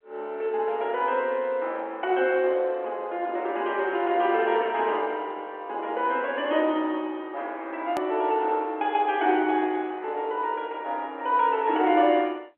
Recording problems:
telephone audio; 260 Hz to 3.4 kHz, G.711
hard cut with a click; at 8 s

